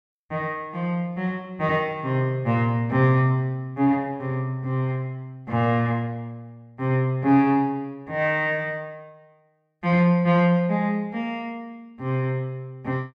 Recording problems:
none

